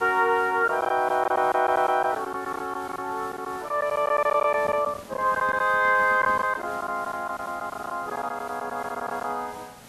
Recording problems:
hiss; SNR 21 dB
lost packets; 10% of the sound replaced, filled with silence
microphone handling noise; from 4.5 to 6.5 s; peak -11 dB vs average level

